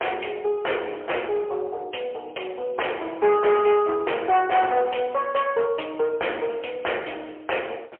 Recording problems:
phone line; 340 Hz to 3.2 kHz, AMR-NB, then MP3
distortion; hard clipping, uneven, signal-to-distortion ratio 6 dB

